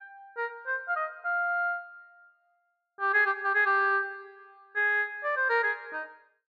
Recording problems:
none

